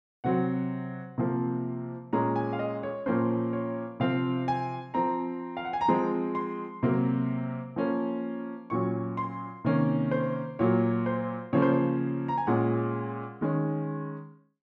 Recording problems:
none

